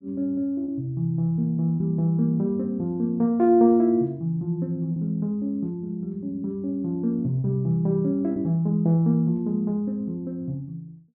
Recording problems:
packet loss; 1.8% of the sound replaced, filled with repeated pitch periods

